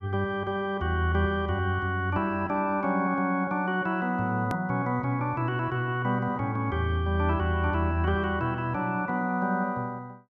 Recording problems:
edit click; at 4.5 s

